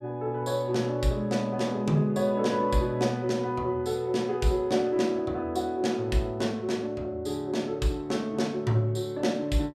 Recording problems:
none

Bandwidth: 14.5 kHz